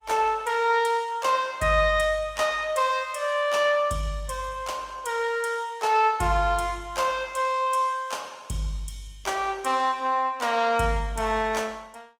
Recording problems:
codec artefacts; Opus, log-spectral distance 3 dB, nothing above 19 kHz

